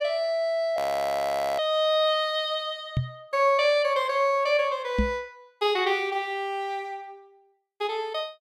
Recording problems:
frozen audio; at 1 s for 1 s
knock on the microphone; at 3 s and at 5 s; peak +4 dB vs average level

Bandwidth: 15.5 kHz